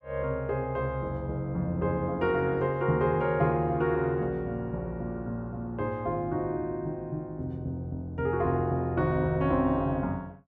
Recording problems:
none

